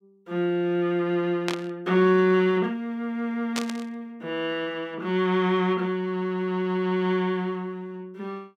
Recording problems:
static burst; at 1.5 s and at 3.5 s; peak 0 dB vs average level

